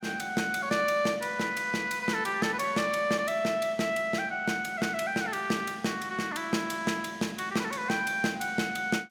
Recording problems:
none

